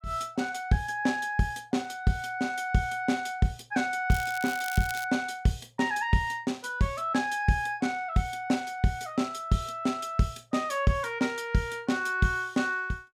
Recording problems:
crackle; at 4 s; loose cable, SNR 12 dB

